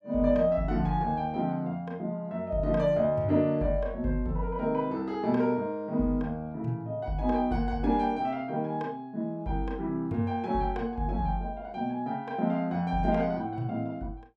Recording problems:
none

